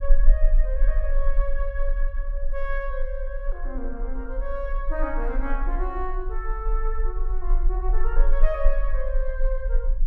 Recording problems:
rumble; below 34 Hz, strongest tone 18 Hz, SNR -6 dB

